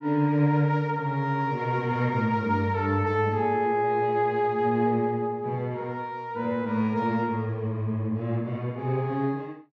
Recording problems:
none

